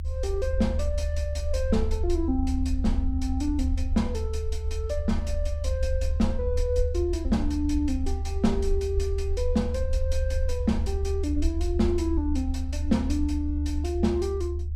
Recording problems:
low-frequency rumble; below 76 Hz, SNR 0 dB

